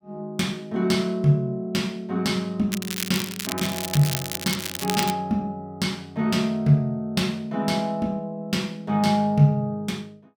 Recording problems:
crackling; from 2.5 to 5 s; loose cable, SNR 5 dB

